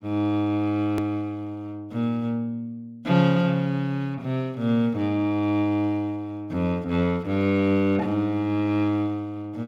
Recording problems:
edit click; at 1 s

